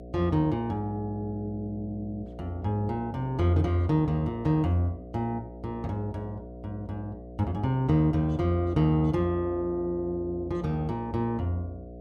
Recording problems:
hum; 60 Hz, harmonics up to 720 Hz, SNR 14 dB

